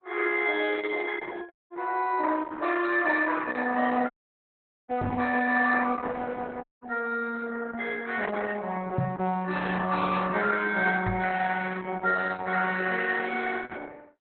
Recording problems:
lossy compression; Opus, log-spectral distance 5 dB, nothing above 3.8 kHz
audio cutting out; at 1.5 s, at 4 s for 1 s and at 6.5 s
microphone bump; at 5 s, at 9 s and at 11 s; peak +5 dB vs average level

